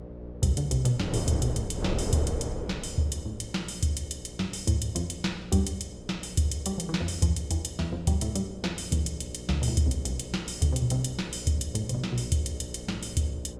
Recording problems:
hum; 60 Hz, harmonics up to 600 Hz, SNR 14 dB
wind on the microphone; below 460 Hz, SNR 11 dB

